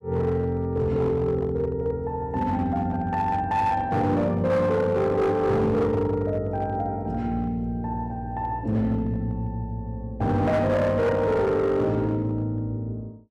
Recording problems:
distortion; hard clipping, signal-to-distortion ratio 12 dB

